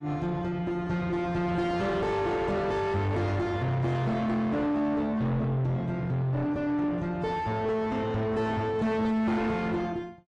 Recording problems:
lossy compression; AAC, log-spectral distance 2 dB, nothing above 10.1 kHz
distortion; soft clipping, signal-to-distortion ratio 6 dB

